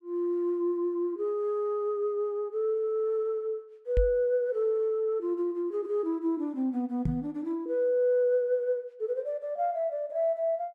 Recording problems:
knock on the microphone; at 4 s and at 7 s; peak +4 dB vs average level

